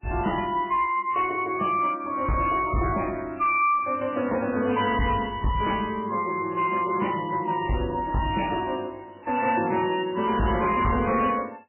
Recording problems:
lossy compression; MP3, log-spectral distance 4 dB, nothing above 2.7 kHz
distorted audio; hard clipping, signal-to-distortion ratio 10 dB

